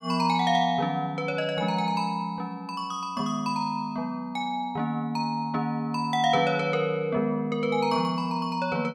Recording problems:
none

